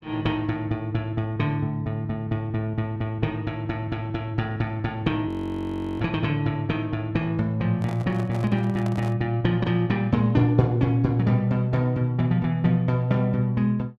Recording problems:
frozen audio; at 5.5 s for 0.5 s
handling noise; from 8 to 9 s; peak -7 dB vs average level

